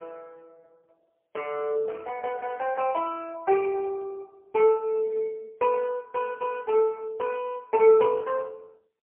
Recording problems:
telephone audio; 340 Hz to 3 kHz, AMR-NB, then MP3

